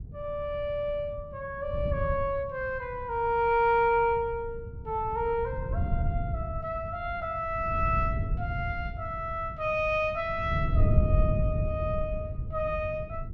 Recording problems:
wind noise; below 110 Hz, SNR 3 dB

